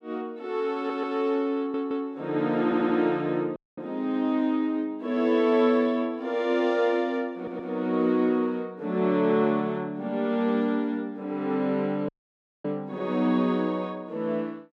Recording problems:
stutter; 4 times, first at 1 s
dropout; at 3.5 s and at 12 s for 0.5 s

